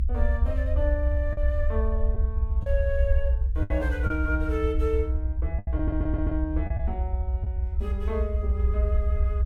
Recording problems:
rumble; below 68 Hz, SNR -5 dB
packet loss; 4% of the sound replaced, filled with the last packet
stutter; at 6 s

